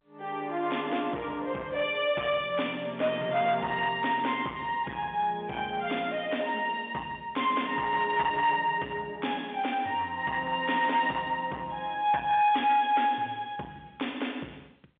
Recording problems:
telephone audio; 240 Hz to 3.5 kHz, G.711
distorted audio; soft clipping, signal-to-distortion ratio 13 dB

